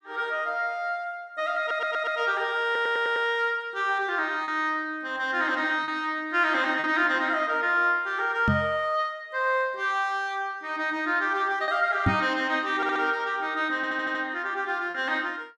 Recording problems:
packet loss; 1.4% of the sound replaced, filled with repeated pitch periods
stutter; 4 times, first at 1.5 s
microphone bump; at 8.5 s and at 12 s; peak +5 dB vs average level

